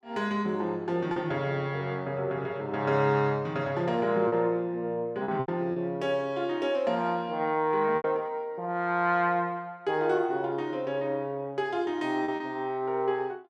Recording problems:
lost packets; 3% of the sound replaced, filled with repeated pitch periods

